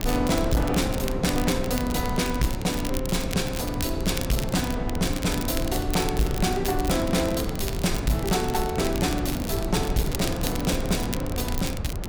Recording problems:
distorted audio; hard clipping, signal-to-distortion ratio 11 dB
low-frequency rumble; below 86 Hz, SNR 9 dB
wind noise; below 440 Hz, SNR 7 dB
crackle; vinyl, SNR 10 dB

